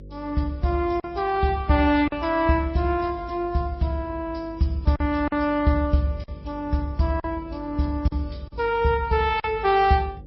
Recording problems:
lossy codec; MP3, then Vorbis, log-spectral distance 2 dB, nothing above 5.5 kHz
electrical hum; 50 Hz, harmonics up to 550 Hz, SNR 19 dB
packet loss; 4% of the sound replaced, filled with silence

